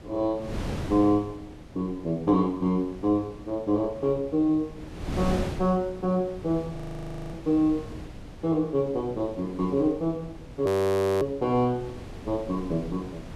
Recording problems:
wind noise; below 440 Hz, SNR 13 dB
audio freezing; at 7 s for 0.5 s and at 11 s for 0.5 s

